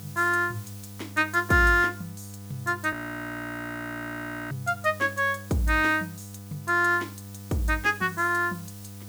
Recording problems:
electrical hum; 50 Hz, harmonics up to 1.2 kHz, SNR 17 dB
background hiss; slope +4 dB per octave, SNR 21 dB
audio freezing; at 3 s for 1.5 s

